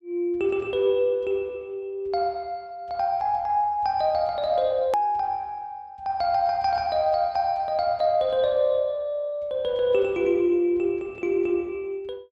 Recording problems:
edit click; at 5 s

